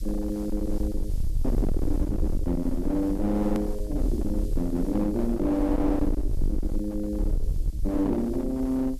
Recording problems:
distorted audio; hard clipping, uneven, signal-to-distortion ratio 5 dB
hiss; slope +7 dB per octave, SNR 25 dB
rumble; below 62 Hz, SNR 4 dB
click at an edit; at 3.5 s

